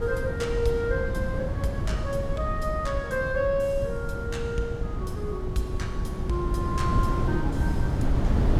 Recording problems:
wind noise; below 170 Hz, SNR 0 dB

